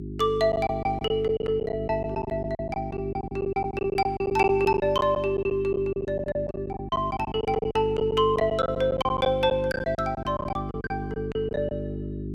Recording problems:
hum; 50 Hz, harmonics up to 400 Hz, SNR 9 dB
lost packets; 16% of the sound replaced, filled with silence

